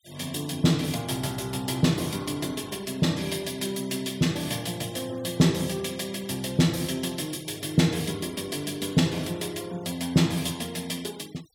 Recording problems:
denoising artefacts; signal-to-artefact ratio 22 dB

